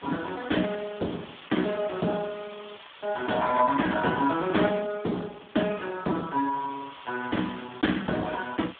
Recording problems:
phone line; 130 Hz to 3.6 kHz, Speex
background hiss; SNR 18 dB

